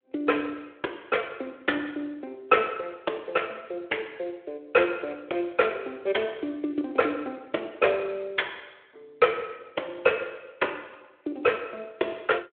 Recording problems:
telephone audio; 320 Hz to 3.5 kHz, Speex

